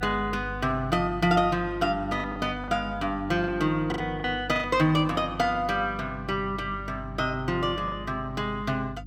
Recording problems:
hum; 50 Hz, harmonics up to 300 Hz, SNR 14 dB
packet loss; 4% of the sound replaced, filled with the last packet

